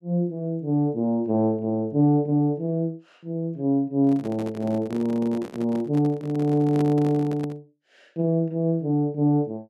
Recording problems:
microphone handling noise; from 4 to 7.5 s; peak -5 dB vs average level

